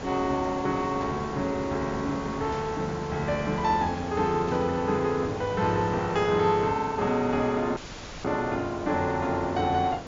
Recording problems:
treble missing; nothing above 7.2 kHz
hiss; slope -6 dB per octave, SNR 11 dB
static burst; at 1 s, at 2.5 s and at 4.5 s; peak -15 dB vs average level
dropout; at 8 s

